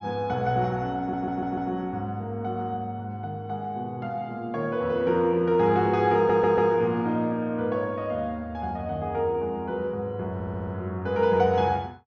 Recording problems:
treble missing; nothing above 6.8 kHz
audio stuttering; at 1 s, at 6 s and at 10 s

